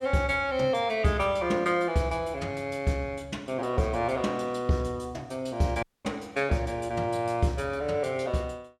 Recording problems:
dropout; at 6 s

